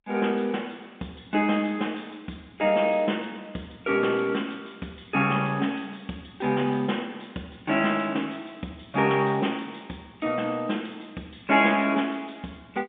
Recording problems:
telephone audio; 170 Hz to 3.5 kHz, G.711

